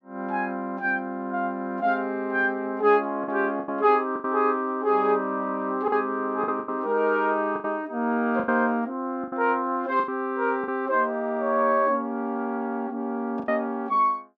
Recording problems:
packet loss; 6% of the sound replaced, filled with the last packet

